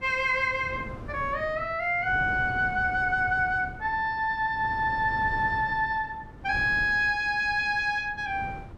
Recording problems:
wind on the microphone; below 320 Hz, SNR 16 dB

